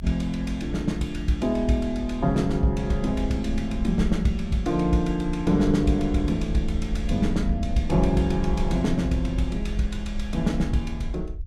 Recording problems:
rumble; below 62 Hz, SNR 8 dB

